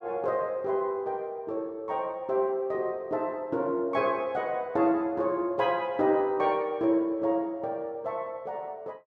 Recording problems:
none

